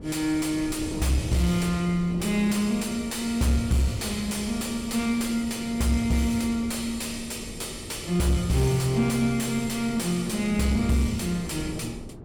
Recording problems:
distortion; soft clipping, signal-to-distortion ratio 11 dB
wind noise; below 350 Hz, SNR 14 dB

